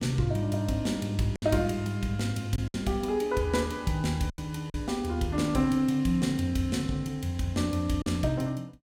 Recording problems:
packet loss; 3% of the sound replaced, filled with silence

